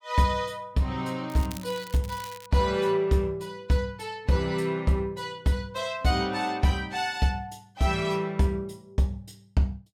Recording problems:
crackle; at 1.5 s and at 2 s; loose cable, SNR 17 dB

